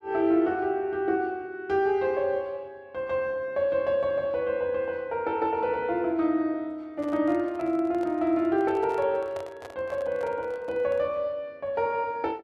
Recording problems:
microphone handling noise; from 7 to 11 s; peak -9 dB vs average level

